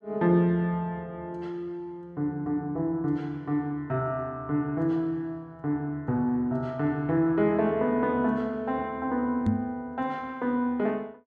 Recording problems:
microphone thump; at 9.5 s; peak +6 dB vs average level

